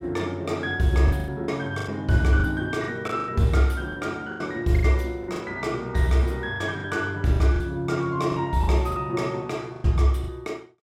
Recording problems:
lost packets; 11% of the sound replaced, filled with the last packet

